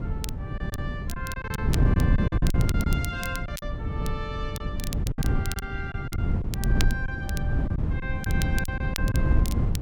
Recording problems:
hum; 60 Hz, harmonics up to 660 Hz, SNR 16 dB
wind on the microphone; below 150 Hz, SNR -9 dB
crackle; vinyl, SNR 4 dB
lost packets; 9% of the sound replaced, filled with silence

